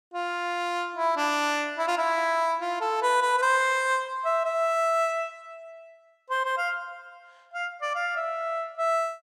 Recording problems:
none

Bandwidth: 16.5 kHz